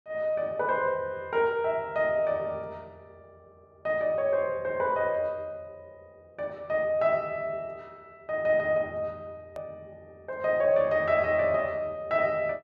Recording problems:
click at an edit; at 9.5 s

